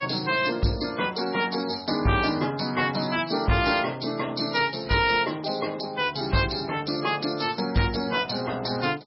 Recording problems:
lossy codec; MP3, log-spectral distance 11 dB, nothing above 5.2 kHz
distorted audio; soft clipping, signal-to-distortion ratio 12 dB

